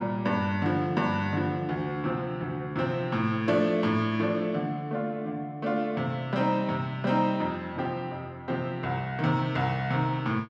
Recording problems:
none

